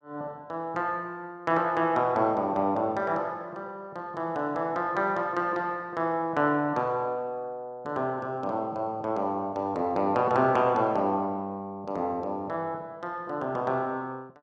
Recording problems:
none

